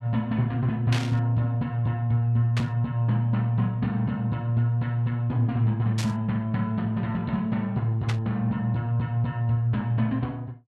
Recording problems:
burst of static; 4 times, first at 1 s; peak -2 dB vs average level

